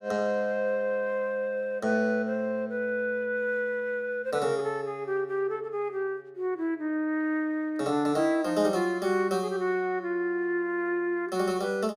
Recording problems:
none

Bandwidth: 15 kHz